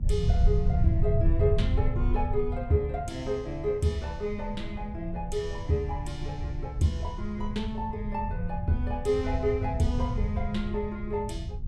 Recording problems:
electrical hum; 60 Hz, harmonics up to 960 Hz, SNR 24 dB
low-frequency rumble; below 98 Hz, SNR 1 dB

